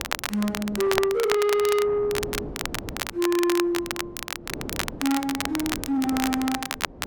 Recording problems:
distortion; soft clipping, signal-to-distortion ratio 8 dB
wind on the microphone; below 450 Hz, SNR 14 dB
crackle; vinyl, SNR 6 dB

